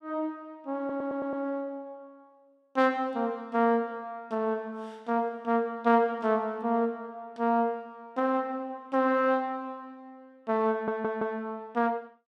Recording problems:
stutter; at 1 s and at 11 s

